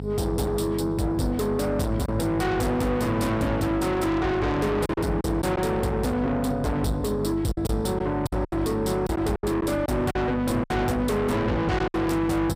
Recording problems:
distorted audio; soft clipping, signal-to-distortion ratio 6 dB
hum; 50 Hz, harmonics up to 500 Hz, SNR 9 dB
packet loss; 5% of the sound replaced, filled with silence

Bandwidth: 15.5 kHz